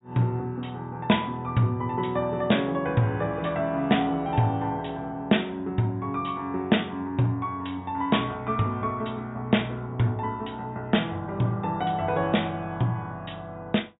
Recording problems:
treble cut off; nothing above 4 kHz

